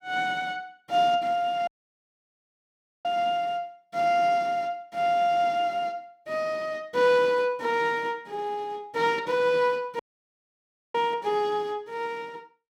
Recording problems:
dropout; at 1.5 s for 1.5 s and at 10 s for 1 s

